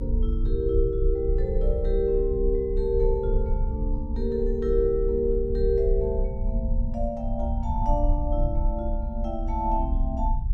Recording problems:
rumble; below 60 Hz, strongest tone 34 Hz, SNR 1 dB

